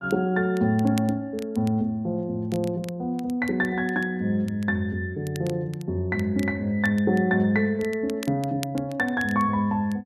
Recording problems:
crackling; vinyl, SNR 21 dB

